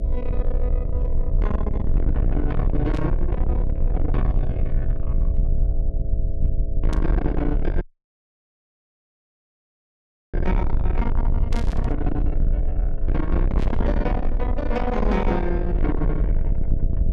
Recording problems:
distortion; soft clipping, signal-to-distortion ratio 6 dB
electrical hum; 60 Hz, harmonics up to 660 Hz, SNR 11 dB
low-frequency rumble; below 60 Hz, SNR -2 dB
burst of static; 4 times, first at 3 s; peak -7 dB vs average level
audio cutting out; at 8 s for 2.5 s

